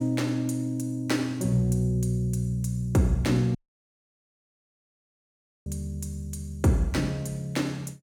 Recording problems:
audio cutting out; at 3.5 s for 2 s

